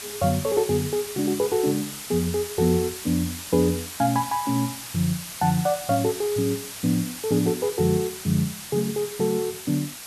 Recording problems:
hiss; slope +1 dB per octave, SNR 9 dB

